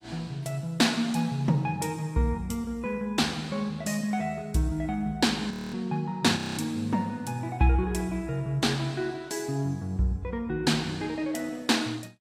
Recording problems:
lossy compression; AAC, log-spectral distance 2 dB
audio freezing; at 5.5 s and at 6.5 s

